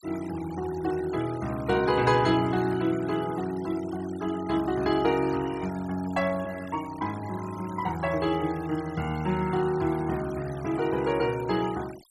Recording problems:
denoising artefacts; signal-to-artefact ratio 18 dB

